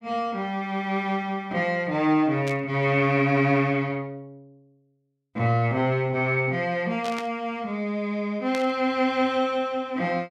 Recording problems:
burst of static; at 2.5 s, at 7 s and at 8.5 s; peak -6 dB vs average level

